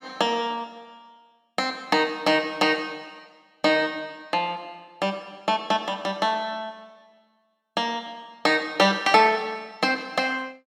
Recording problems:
none

